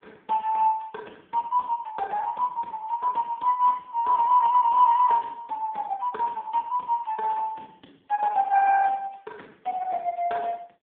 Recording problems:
telephone audio; 320 Hz to 3.5 kHz, AMR-NB

